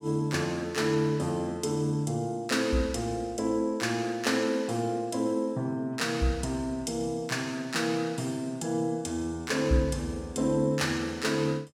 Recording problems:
none

